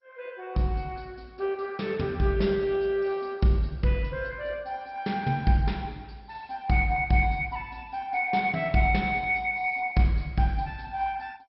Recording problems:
lossy codec; MP2, log-spectral distance 3 dB, nothing above 5.5 kHz

